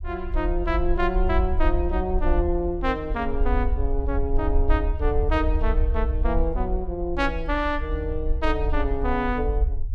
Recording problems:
low-frequency rumble; below 58 Hz, SNR 1 dB

